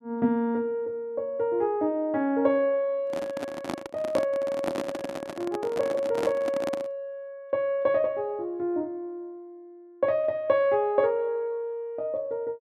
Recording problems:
microphone handling noise; from 3 to 7 s; peak +1 dB vs average level

